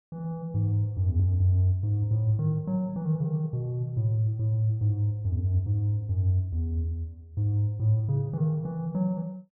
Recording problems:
none

